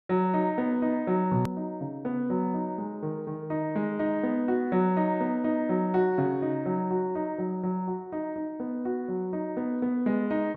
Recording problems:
click at an edit; at 1.5 s

